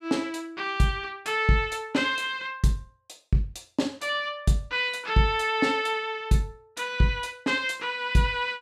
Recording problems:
none

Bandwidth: 14.5 kHz